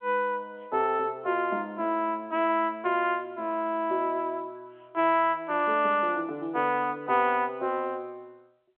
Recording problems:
phone line; 280 Hz to 3.2 kHz, G.711

